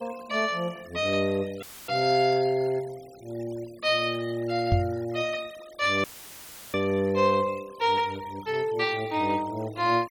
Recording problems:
noise reduction artefacts; signal-to-artefact ratio 22 dB
audio cutting out; at 1.5 s and at 6 s for 0.5 s; filled with static
microphone bump; at 4.5 s; peak +5 dB vs average level

